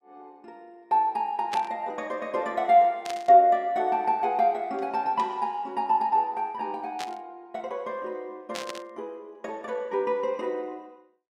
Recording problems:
burst of static; 4 times, first at 1.5 s; peak -5 dB vs average level

